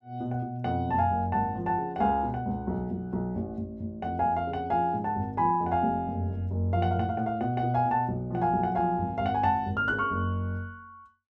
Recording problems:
none

